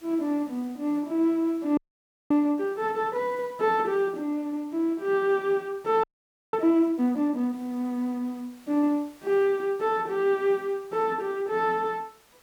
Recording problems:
background hiss; slope -2 dB per octave, SNR 29 dB
audio freezing; at 2 s for 0.5 s and at 6 s

